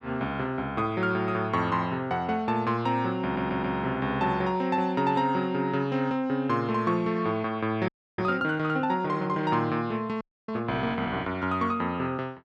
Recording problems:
audio stuttering; at 3 s
audio freezing; at 8 s and at 10 s

